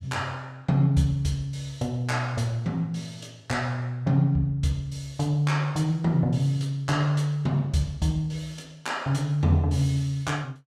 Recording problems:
none

